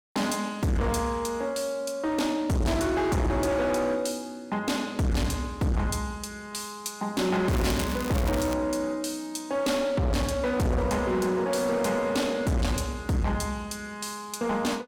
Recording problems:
distorted audio; hard clipping, uneven, signal-to-distortion ratio 6 dB
crackle; from 7.5 to 8.5 s; loose cable, SNR 11 dB

